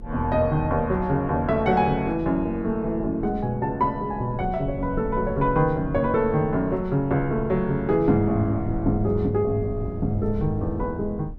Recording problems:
rumble; below 100 Hz, SNR 13 dB

